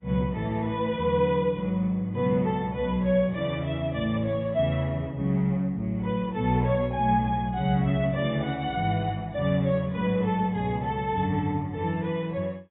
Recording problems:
codec artefacts; AAC, log-spectral distance 2 dB, nothing above 3.7 kHz

